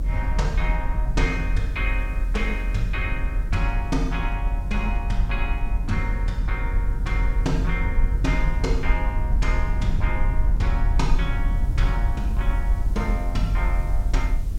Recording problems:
background hiss; slope -3 dB per octave, SNR 24 dB
low-frequency rumble; below 54 Hz, strongest tone 42 Hz, SNR -4 dB

